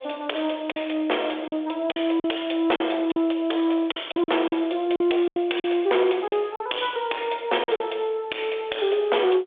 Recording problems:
telephone audio; 300 Hz to 3.6 kHz, G.726
distortion; soft clipping, signal-to-distortion ratio 12 dB
packet loss; 8% of the sound replaced, filled with silence

